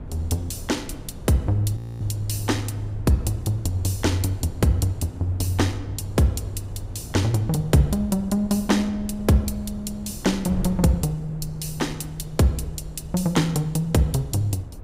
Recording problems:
wind noise; below 150 Hz, SNR 13 dB
audio freezing; at 2 s

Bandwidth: 15.5 kHz